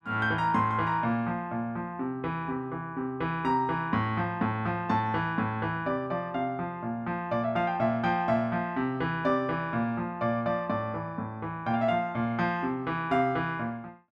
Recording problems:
none

